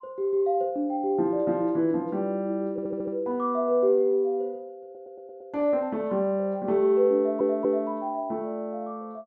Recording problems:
audio stuttering; at 2.5 s, at 5 s and at 7 s

